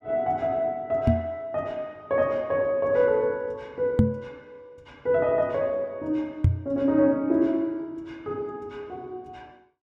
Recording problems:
microphone thump; at 1 s, at 4 s and at 6.5 s; peak +10 dB vs average level

